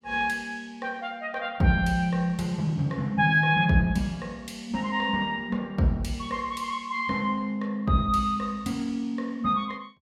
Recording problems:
none

